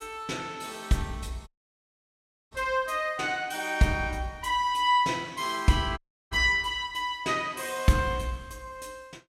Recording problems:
audio cutting out; at 1.5 s for 1 s and at 6 s

